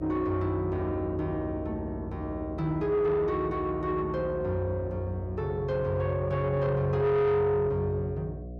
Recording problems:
distortion; soft clipping, signal-to-distortion ratio 11 dB
electrical hum; 60 Hz, harmonics up to 720 Hz, SNR 13 dB

